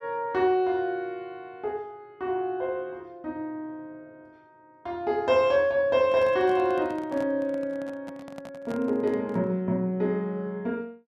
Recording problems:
handling noise; from 6 to 9.5 s; peak -9 dB vs average level

